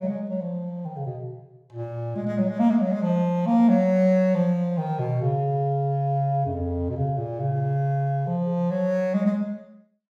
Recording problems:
none

